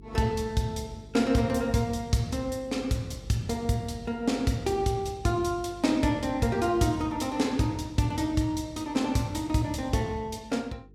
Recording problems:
hum; 50 Hz, harmonics up to 450 Hz, SNR 22 dB

